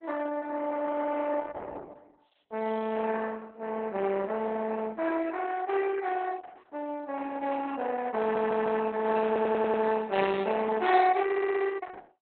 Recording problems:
lossy codec; Opus, log-spectral distance 5 dB, nothing above 4 kHz
audio stuttering; at 8 s, at 9.5 s and at 11 s

